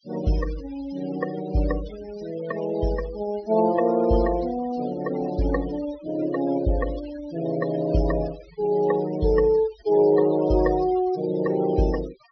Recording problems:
treble cut off; nothing above 5.7 kHz
denoising artefacts; signal-to-artefact ratio 18 dB

